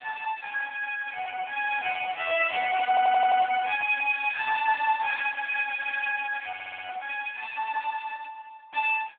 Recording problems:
phone line; 260 Hz to 2.2 kHz, AMR-NB
stutter; at 3 s and at 6.5 s

